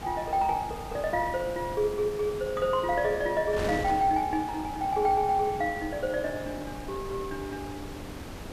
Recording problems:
background hiss; slope 0 dB per octave, SNR 26 dB
wind noise; below 1 kHz, SNR 11 dB

